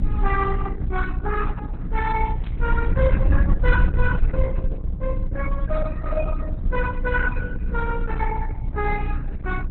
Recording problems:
lossy compression; Opus, then Opus, log-spectral distance 3 dB, nothing above 4 kHz
electrical hum; 60 Hz, harmonics up to 300 Hz, SNR 7 dB
rumble; below 64 Hz, strongest tone 30 Hz, SNR -1 dB
burst of static; at 2.5 s; peak -14 dB vs average level

